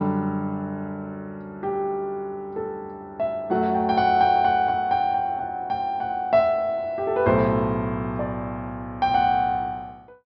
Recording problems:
treble cut off; nothing above 5.7 kHz

